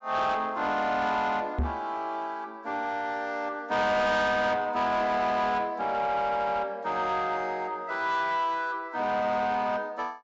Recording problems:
low-pass filter; nothing above 8 kHz
distorted audio; soft clipping, signal-to-distortion ratio 11 dB
microphone thump; at 1.5 s; peak +2 dB vs average level

